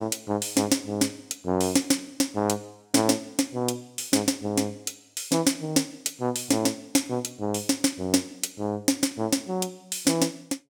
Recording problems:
none

